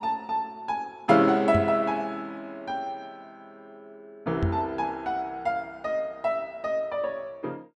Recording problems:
microphone thump; at 1.5 s and at 4.5 s; peak +4 dB vs average level

